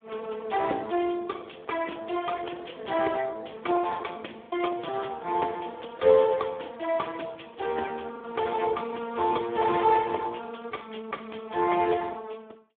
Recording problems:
telephone audio; 280 Hz to 2.2 kHz, Speex
lost packets; 3% of the sound replaced, filled with the last packet

